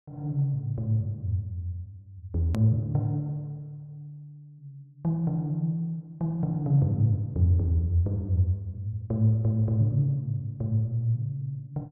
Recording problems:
click at an edit; at 2.5 s

